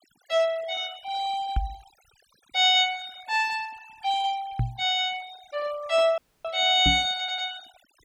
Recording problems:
denoising artefacts; signal-to-artefact ratio 23 dB
microphone thump; at 1.5 s, at 4.5 s and at 7 s; peak +2 dB vs average level
dropout; at 6 s
stutter; at 7 s

